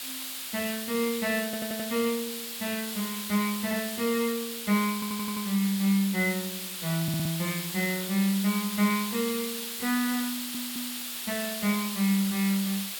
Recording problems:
background hiss; SNR 5 dB
audio stuttering; 4 times, first at 1.5 s

